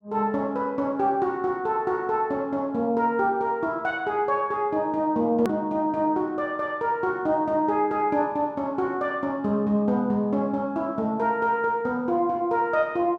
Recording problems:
edit click; at 5.5 s

